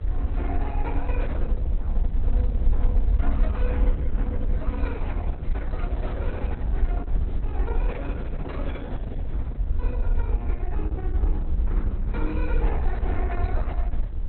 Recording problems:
codec artefacts; AAC, then Opus, log-spectral distance 2 dB, nothing above 4.1 kHz
electrical hum; 50 Hz, harmonics up to 650 Hz, SNR 14 dB
rumble; below 60 Hz, SNR -10 dB
wind on the microphone; below 240 Hz, SNR 8 dB

